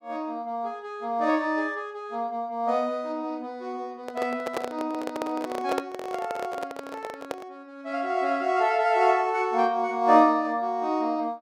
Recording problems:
microphone handling noise; from 4 to 7.5 s; peak +2 dB vs average level

